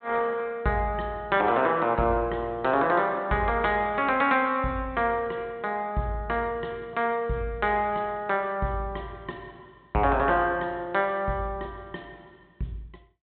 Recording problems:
low-pass filter; nothing above 4 kHz

